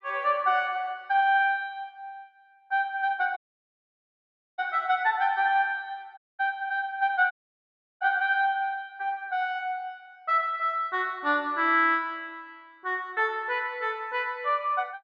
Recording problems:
dropout; at 3.5 s for 1 s, at 6 s and at 7.5 s for 0.5 s

